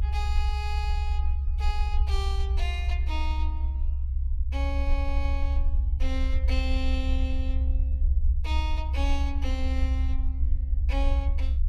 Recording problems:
low-frequency rumble; below 68 Hz, SNR -9 dB

